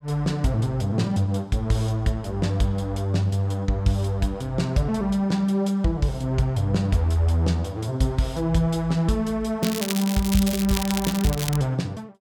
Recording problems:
crackle; from 9.5 to 12 s; loose cable, SNR 7 dB

